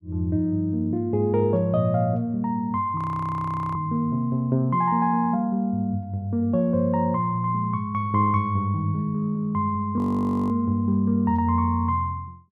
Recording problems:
frozen audio; at 3 s for 1 s and at 10 s for 0.5 s

